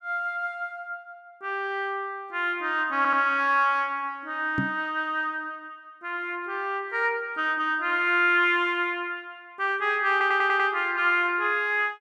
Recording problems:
audio stuttering; at 3 s and at 10 s
microphone bump; at 4.5 s; peak +1 dB vs average level

